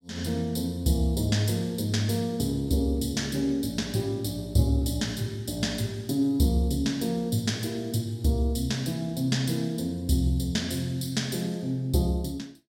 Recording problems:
none

